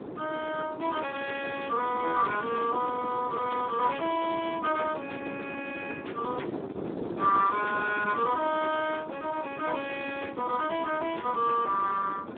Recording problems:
phone line; 300 Hz to 3.5 kHz, Speex
wind noise; below 500 Hz, SNR 10 dB

